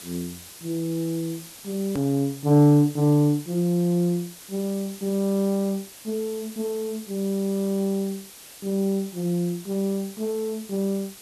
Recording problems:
background hiss; slope 0 dB per octave, SNR 17 dB
hard cut with a click; at 2 s

